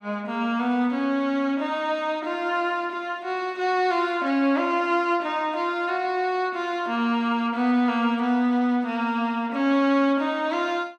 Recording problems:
none

